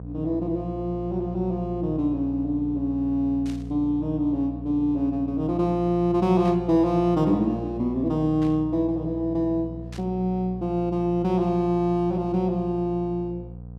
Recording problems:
hum; 60 Hz, harmonics up to 720 Hz, SNR 12 dB
static burst; 4 times, first at 3.5 s; peak -15 dB vs average level

